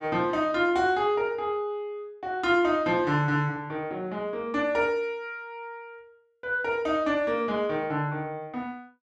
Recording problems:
none

